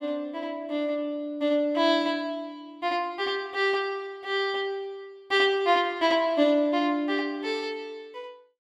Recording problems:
none

